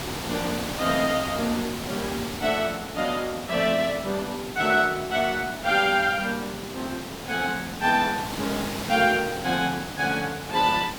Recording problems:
background hiss; slope -3 dB per octave, SNR 8 dB

